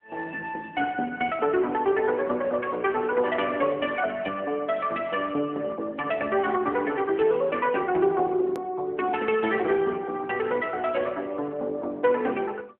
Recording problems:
phone line; 220 Hz to 3.3 kHz, AMR-NB
hard cut with a click; at 8.5 s

